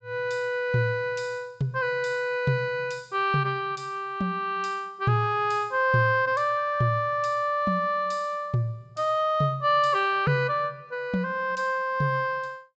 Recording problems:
low-pass filter; nothing above 8 kHz

